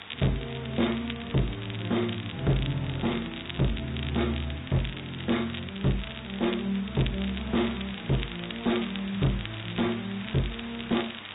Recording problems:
treble cut off; nothing above 3.8 kHz
lossy compression; MP3, log-spectral distance 12 dB
distortion; hard clipping, uneven, signal-to-distortion ratio 11 dB
hum; 50 Hz, harmonics up to 700 Hz, SNR 25 dB
background hiss; SNR 13 dB
crackling; vinyl, SNR 11 dB

